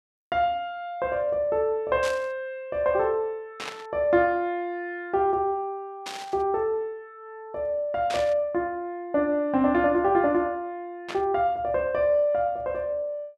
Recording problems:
burst of static; 5 times, first at 2 s; peak -4 dB vs average level

